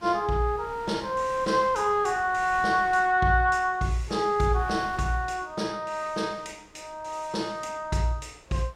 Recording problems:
wind on the microphone; below 1.8 kHz, SNR 22 dB

